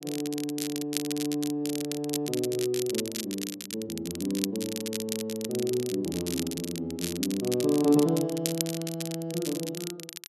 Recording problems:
crackling; vinyl, SNR 6 dB

